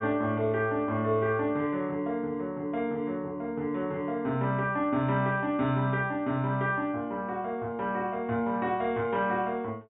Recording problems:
low-pass filter; nothing above 4 kHz

